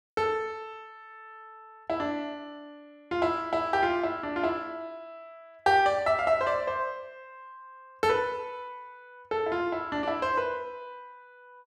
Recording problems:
none

